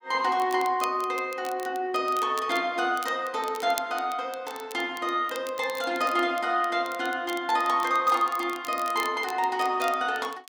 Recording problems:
crackle; vinyl, SNR 17 dB

